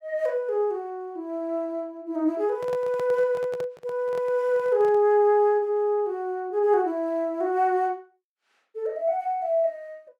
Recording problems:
microphone handling noise; from 2.5 to 5 s; peak -9 dB vs average level

